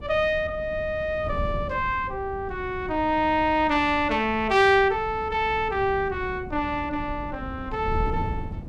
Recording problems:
wind noise; below 160 Hz, SNR 12 dB

